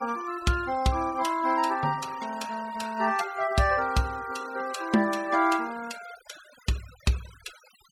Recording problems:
noise reduction artefacts; signal-to-artefact ratio 19 dB

